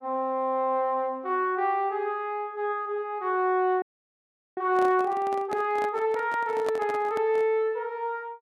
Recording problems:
audio freezing; at 4 s for 1 s
handling noise; from 4.5 to 7.5 s; peak -3 dB vs average level

